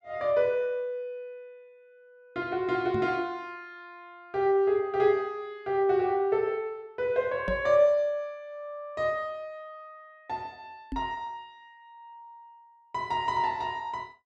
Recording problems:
microphone bump; at 3 s, at 7.5 s and at 11 s; peak -3 dB vs average level

